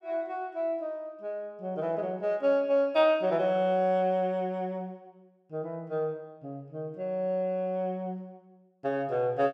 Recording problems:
none

